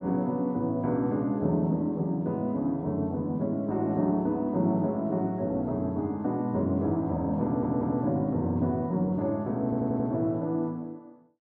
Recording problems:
stutter; at 7.5 s and at 9.5 s

